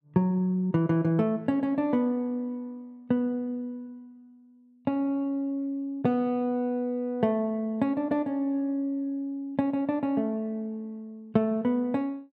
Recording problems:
none

